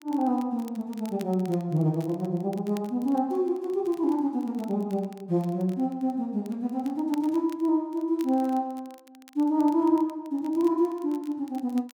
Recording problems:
crackling; vinyl, SNR 27 dB

